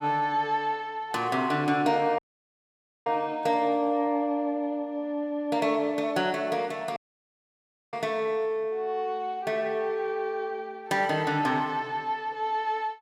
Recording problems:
audio cutting out; at 2 s for 1 s and at 7 s for 1 s

